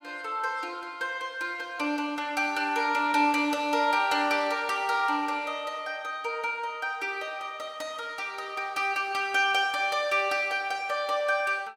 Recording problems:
none

